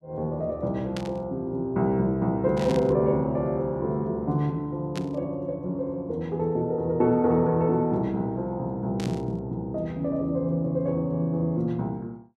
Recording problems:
static burst; 4 times, first at 1 s; peak -7 dB vs average level

